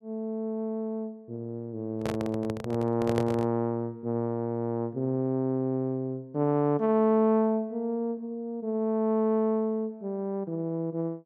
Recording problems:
microphone handling noise; from 2 to 3.5 s; peak +2 dB vs average level

